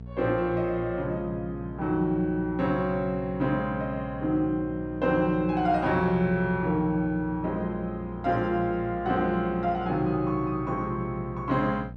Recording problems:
hum; 60 Hz, harmonics up to 660 Hz, SNR 13 dB

